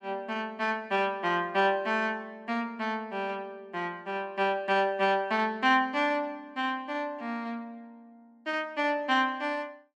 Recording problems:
none

